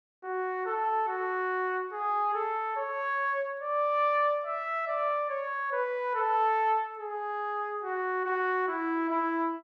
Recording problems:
none

